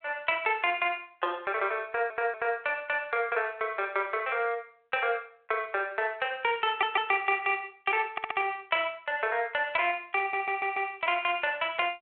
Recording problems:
phone line; 340 Hz to 3.5 kHz, G.726
stutter; 4 times, first at 2 s

